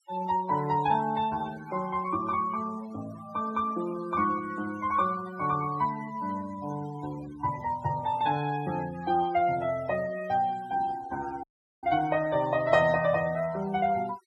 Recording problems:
noise reduction artefacts; signal-to-artefact ratio 17 dB
audio cutting out; at 11 s

